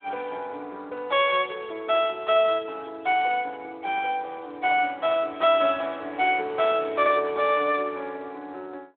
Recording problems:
telephone audio; 320 Hz to 3.7 kHz, Speex

